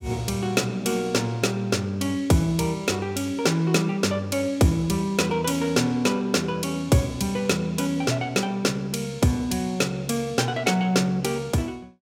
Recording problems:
none

